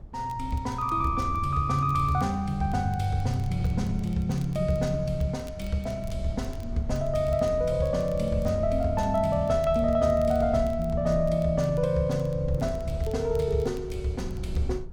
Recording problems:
wind on the microphone; below 96 Hz, SNR 12 dB
crackling; vinyl, SNR 29 dB

